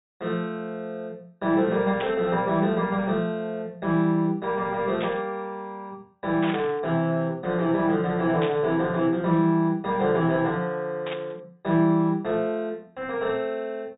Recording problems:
treble cut off; nothing above 4 kHz
static burst; 5 times, first at 2 s; peak -4 dB vs average level

